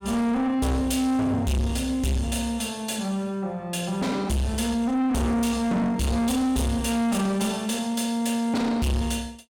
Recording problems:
distortion; soft clipping, signal-to-distortion ratio 7 dB

